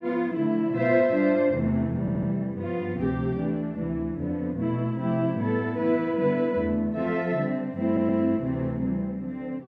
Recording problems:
stutter; at 2 s and at 8 s

